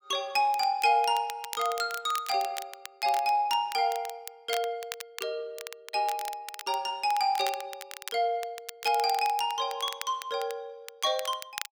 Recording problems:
crackling; vinyl, SNR 13 dB

